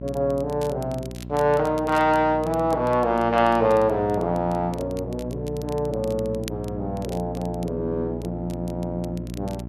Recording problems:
electrical hum; 60 Hz, harmonics up to 720 Hz, SNR 10 dB
crackling; vinyl, SNR 22 dB

